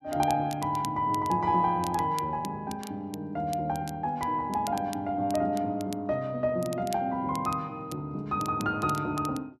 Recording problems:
crackle; vinyl, SNR 17 dB

